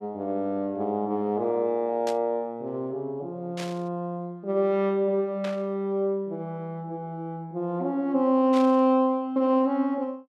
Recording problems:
burst of static; 4 times, first at 2 s; peak -7 dB vs average level

